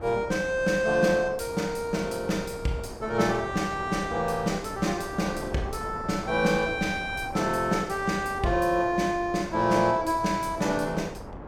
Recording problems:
wind noise; below 720 Hz, SNR 13 dB

